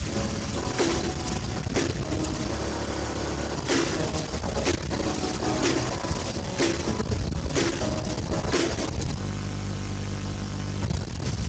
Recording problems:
codec artefacts; Opus, then Speex, log-spectral distance 10 dB, nothing above 7.6 kHz
distorted audio; soft clipping, signal-to-distortion ratio 8 dB
hiss; slope -1 dB per octave, SNR 7 dB
low-frequency rumble; below 330 Hz, SNR 4 dB
frozen audio; at 2.5 s for 1 s and at 9 s for 1.5 s

